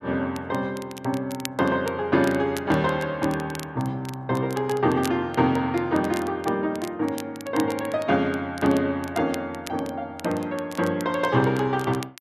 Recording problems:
crackling; vinyl, SNR 18 dB

